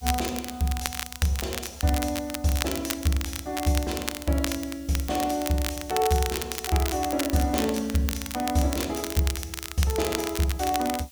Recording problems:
background hiss; slope +3 dB per octave, SNR 22 dB
crackle; vinyl, SNR 6 dB

